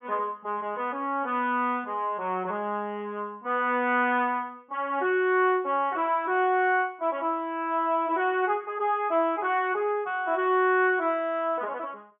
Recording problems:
treble missing; nothing above 3.6 kHz

